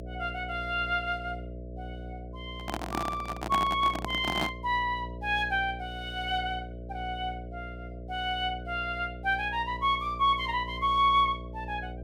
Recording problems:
electrical hum; 60 Hz, harmonics up to 660 Hz, SNR 12 dB
handling noise; from 2.5 to 4.5 s; peak +1 dB vs average level

